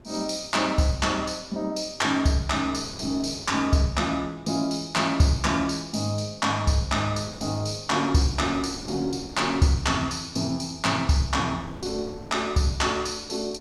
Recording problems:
wind noise; below 510 Hz, SNR 21 dB

